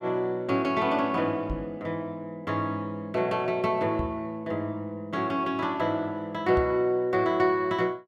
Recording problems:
microphone bump; at 1.5 s, at 4 s and at 6.5 s; peak -1 dB vs average level

